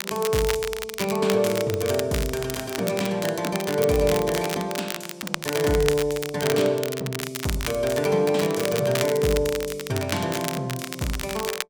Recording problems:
crackling; vinyl, SNR 8 dB

